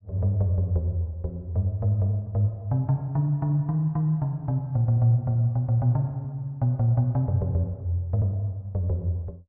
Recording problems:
treble cut off; nothing above 6.1 kHz

